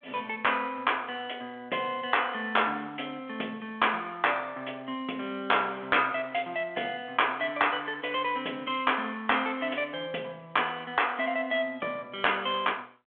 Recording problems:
phone line; 240 Hz to 3.5 kHz, G.726

